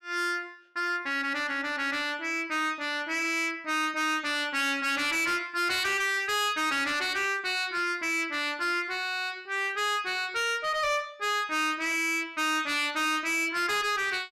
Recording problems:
distorted audio; hard clipping, uneven, signal-to-distortion ratio 8 dB

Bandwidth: 14.5 kHz